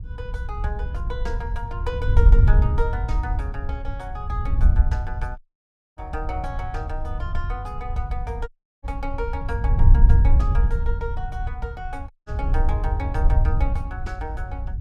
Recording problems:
wind noise; below 74 Hz, SNR -9 dB
audio cutting out; at 5.5 s for 0.5 s, at 8.5 s and at 12 s

